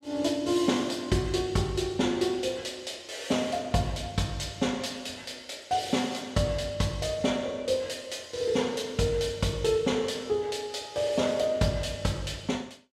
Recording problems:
none

